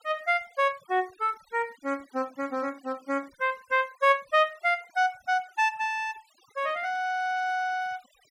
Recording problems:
noise reduction artefacts; signal-to-artefact ratio 27 dB

